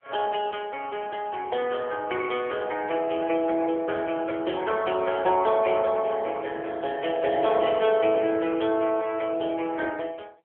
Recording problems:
telephone audio; 340 Hz to 3.3 kHz, AMR-NB

